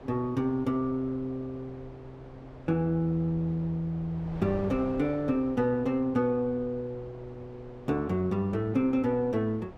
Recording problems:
wind on the microphone; below 650 Hz, SNR 18 dB

